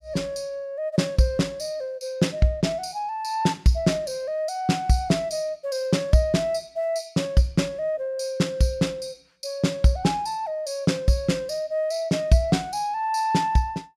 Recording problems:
none

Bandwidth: 15 kHz